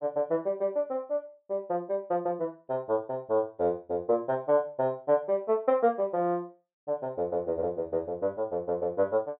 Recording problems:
treble missing; nothing above 3.8 kHz

